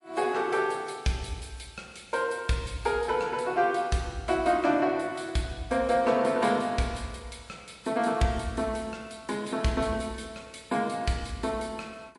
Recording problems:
lossy compression; MP3, log-spectral distance 4 dB, nothing above 11 kHz

